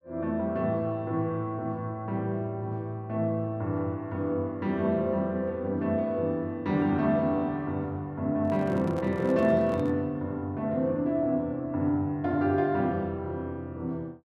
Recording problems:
microphone handling noise; from 8.5 to 10 s; peak -10 dB vs average level

